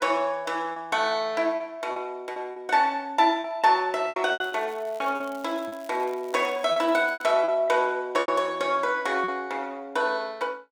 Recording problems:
lost packets; 8% of the sound replaced, filled with repeated pitch periods
crackle; from 4.5 to 7.5 s; loose cable, SNR 26 dB

